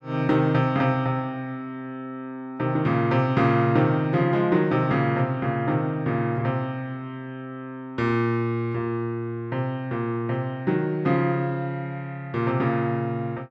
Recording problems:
none

